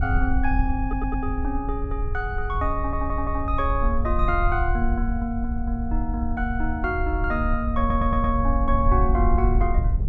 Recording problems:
wind noise; below 66 Hz, SNR 1 dB
audio stuttering; at 1 s, at 3 s and at 8 s

